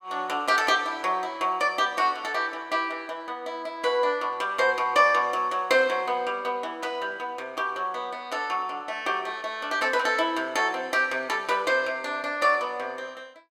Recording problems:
none

